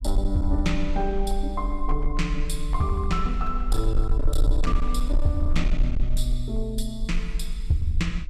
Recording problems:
distorted audio; hard clipping, signal-to-distortion ratio 11 dB
rumble; below 42 Hz, strongest tone 22 Hz, SNR 0 dB

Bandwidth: 14.5 kHz